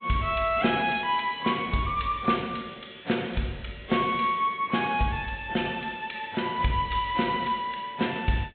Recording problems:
treble missing; nothing above 3.9 kHz
lossy codec; AAC, log-spectral distance 5 dB

